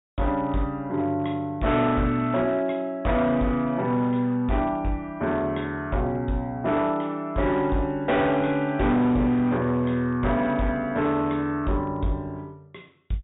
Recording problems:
treble missing; nothing above 4 kHz
distortion; hard clipping, signal-to-distortion ratio 11 dB

